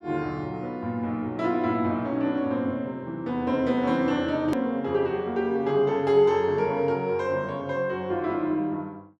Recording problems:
click at an edit; at 4.5 s

